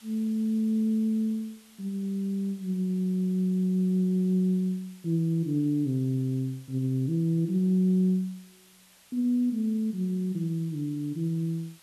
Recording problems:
background hiss; slope +1 dB per octave, SNR 27 dB

